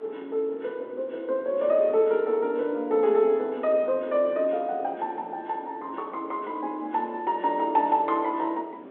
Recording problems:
phone line; 260 Hz to 3.8 kHz, G.726
wind noise; below 560 Hz, SNR 20 dB

